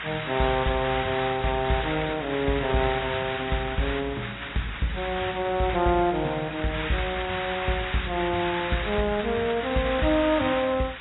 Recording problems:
lossy codec; AAC, log-spectral distance 18 dB, nothing above 3.8 kHz
hum; 60 Hz, harmonics up to 720 Hz, SNR 21 dB
hiss; SNR 6 dB

